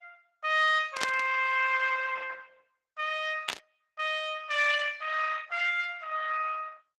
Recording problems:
lossy compression; Opus, log-spectral distance 5 dB
burst of static; at 1 s and at 3.5 s; peak +3 dB vs average level

